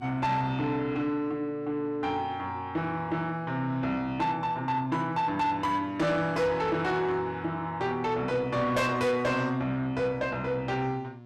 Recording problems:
distorted audio; soft clipping, signal-to-distortion ratio 11 dB
hum; 60 Hz, harmonics up to 1.1 kHz, SNR 20 dB

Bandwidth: 13 kHz